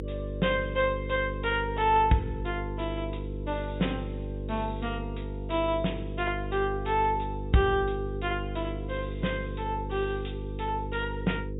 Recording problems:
treble missing; nothing above 4 kHz
hum; 50 Hz, harmonics up to 500 Hz, SNR 6 dB

